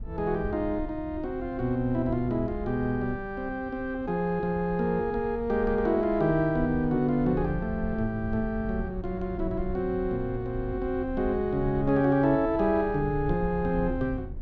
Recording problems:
low-frequency rumble; below 96 Hz, SNR 12 dB

